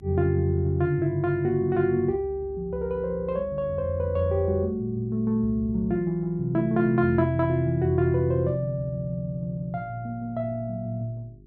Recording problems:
hum; 50 Hz, harmonics up to 400 Hz, SNR 23 dB

